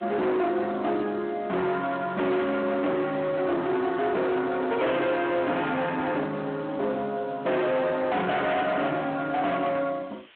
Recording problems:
phone line; 220 Hz to 3.7 kHz, Speex
distortion; hard clipping, signal-to-distortion ratio 6 dB
hiss; SNR 27 dB

